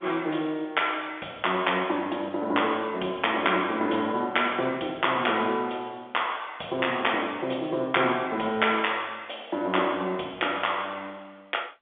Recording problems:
telephone audio; 240 Hz to 3.5 kHz, G.711

